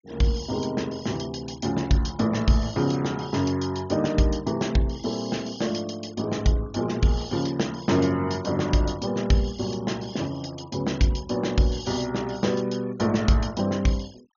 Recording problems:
low-pass filter; nothing above 6.9 kHz
denoising artefacts; signal-to-artefact ratio 23 dB

